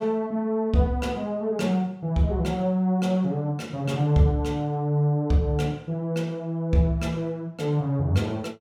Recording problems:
none

